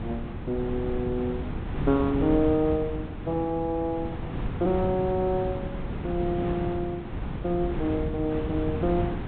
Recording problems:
treble missing; nothing above 4 kHz
wind on the microphone; below 280 Hz, SNR 5 dB

